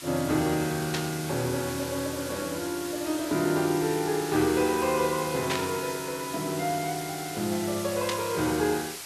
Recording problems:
hiss; slope +1 dB per octave, SNR 9 dB
static burst; at 1 s, at 5.5 s and at 8 s; peak +2 dB vs average level

